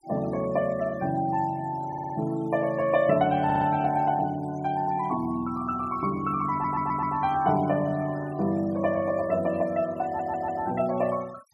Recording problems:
denoising artefacts; signal-to-artefact ratio 22 dB
audio stuttering; 4 times, first at 2 s

